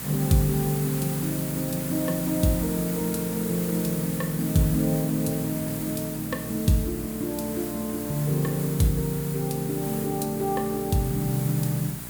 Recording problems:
hum; 60 Hz, harmonics up to 780 Hz, SNR 15 dB
hiss; slope -2 dB per octave, SNR 8 dB

